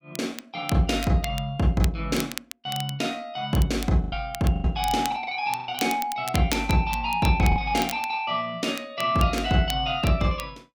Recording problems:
crackle; vinyl, SNR 13 dB
packet loss; 4% of the sound replaced, filled with the last packet

